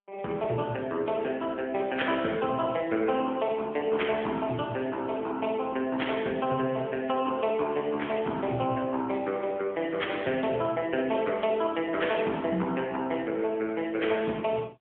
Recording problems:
phone line; 150 Hz to 3.4 kHz, AMR-NB, then MP3

